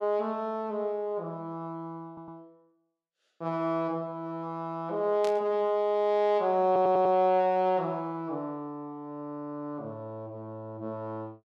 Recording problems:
audio stuttering; at 2 s and at 6.5 s
static burst; at 5 s; peak -8 dB vs average level

